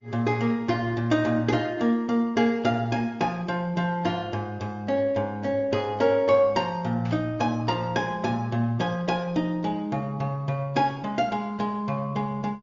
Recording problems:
treble missing; nothing above 7.1 kHz
lossy compression; Opus, log-spectral distance 2 dB
burst of static; at 7 s; peak -15 dB vs average level

